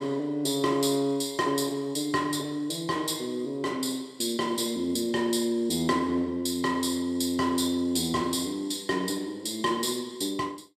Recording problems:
none

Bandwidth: 14.5 kHz